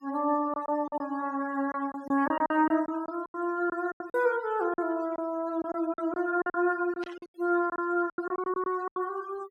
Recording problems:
noise reduction artefacts; signal-to-artefact ratio 22 dB
packet loss; 13% of the sound replaced, filled with silence
burst of static; at 7 s; peak -13 dB vs average level

